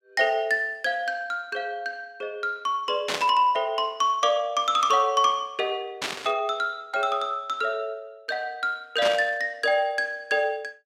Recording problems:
static burst; at 3 s, at 6 s and at 9 s; peak +1 dB vs average level

